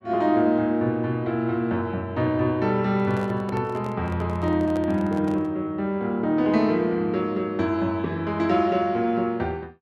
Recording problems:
microphone handling noise; from 3 to 5.5 s; peak -8 dB vs average level

